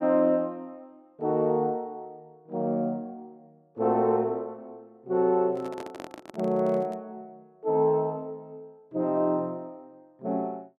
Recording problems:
handling noise; from 5.5 to 7 s; peak -9 dB vs average level

